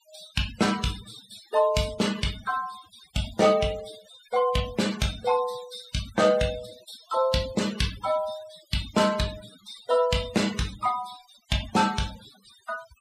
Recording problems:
noise reduction artefacts; signal-to-artefact ratio 15 dB

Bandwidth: 15.5 kHz